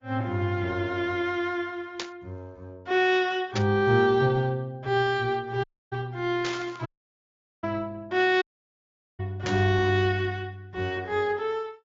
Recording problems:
low-pass filter; nothing above 6 kHz
lossy codec; Opus, log-spectral distance 2 dB
burst of static; 4 times, first at 2 s; peak -1 dB vs average level
dropout; at 5.5 s, at 7 s for 1 s and at 8.5 s for 1 s

